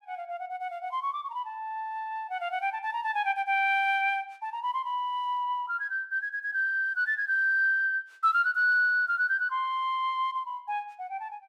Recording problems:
none

